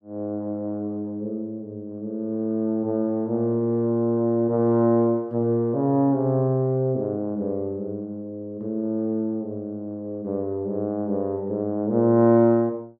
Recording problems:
none

